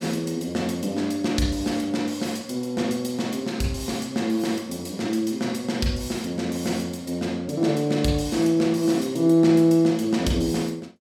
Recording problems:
none

